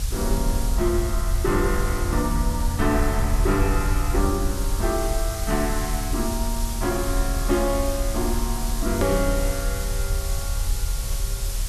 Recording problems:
background hiss; slope 0 dB per octave, SNR 7 dB
low-frequency rumble; below 66 Hz, strongest tone 36 Hz, SNR 1 dB
click at an edit; at 9 s

